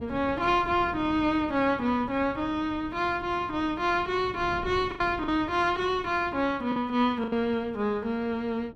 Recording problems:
wind on the microphone; below 290 Hz, SNR 18 dB
lost packets; 3% of the sound replaced, filled with the last packet

